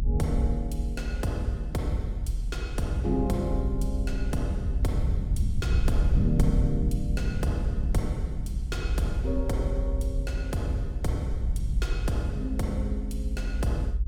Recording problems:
rumble; below 70 Hz, SNR -2 dB

